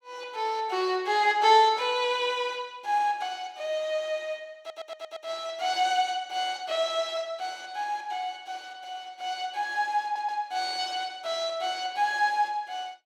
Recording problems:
stutter; at 4.5 s and at 10 s

